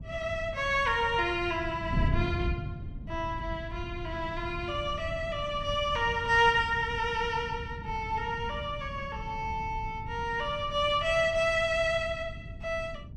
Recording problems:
wind on the microphone; below 150 Hz, SNR 10 dB

